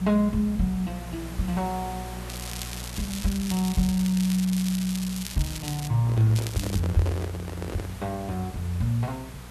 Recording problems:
electrical hum; 60 Hz, harmonics up to 600 Hz, SNR 14 dB
background hiss; slope -3 dB per octave, SNR 17 dB
crackling; from 2.5 to 6 s and at 6.5 s; loose cable, SNR 10 dB
microphone handling noise; from 6 to 8 s; peak -3 dB vs average level

